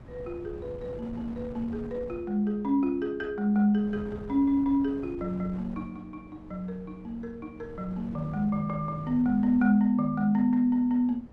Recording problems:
wind noise; below 360 Hz, SNR 18 dB

